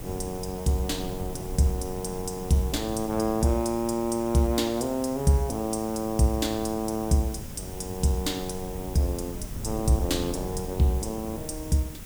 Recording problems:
background hiss; slope -1 dB per octave, SNR 16 dB
wind on the microphone; below 170 Hz, SNR 12 dB

